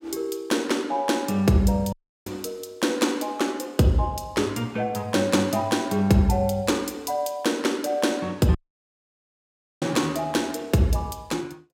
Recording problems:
audio cutting out; at 2 s and at 8.5 s for 1.5 s

